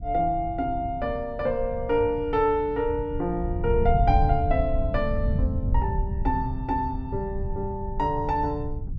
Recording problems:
rumble; below 94 Hz, SNR 4 dB

